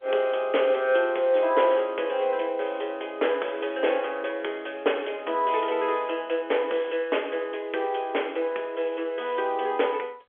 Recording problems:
phone line; 370 Hz to 3.4 kHz, G.711

